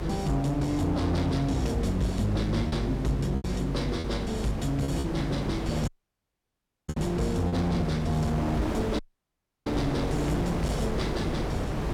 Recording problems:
distorted audio; hard clipping, uneven, signal-to-distortion ratio 11 dB
electrical hum; 50 Hz, harmonics up to 400 Hz, SNR 7 dB
wind on the microphone; below 640 Hz, SNR 5 dB
lost packets; 4% of the sound replaced, filled with repeated pitch periods
audio cutting out; at 6 s for 1 s and at 9 s for 0.5 s

